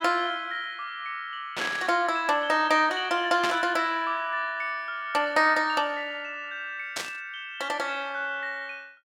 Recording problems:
static burst; at 1.5 s, at 3.5 s and at 7 s; peak +1 dB vs average level

